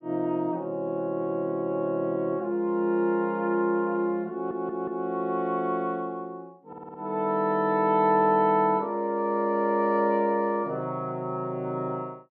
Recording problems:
audio stuttering; at 4.5 s and at 6.5 s

